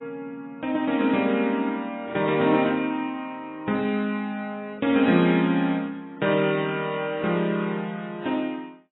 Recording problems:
lossy codec; AAC, log-spectral distance 2 dB, nothing above 3.7 kHz

